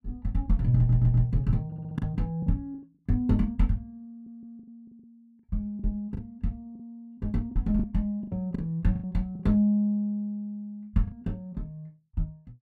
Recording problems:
lost packets; 7% of the sound replaced, filled with the last packet
audio stuttering; at 1 s, at 1.5 s and at 4 s

